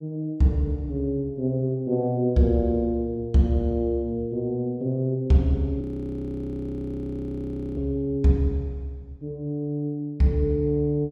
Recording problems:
audio freezing; at 6 s for 2 s

